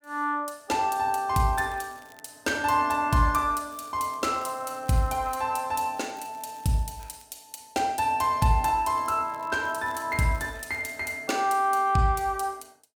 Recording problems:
crackling; 4 times, first at 1.5 s; loose cable, SNR 28 dB

